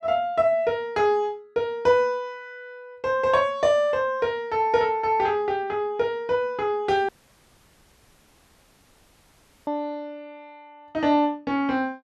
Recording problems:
dropout; at 7 s for 2.5 s

